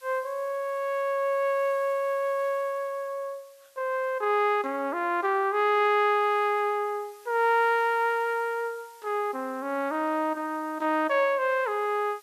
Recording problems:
background hiss; slope +3 dB per octave, SNR 28 dB

